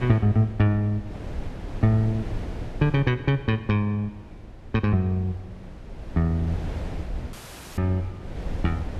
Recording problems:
wind noise; below 210 Hz, SNR 13 dB
dropout; at 7.5 s

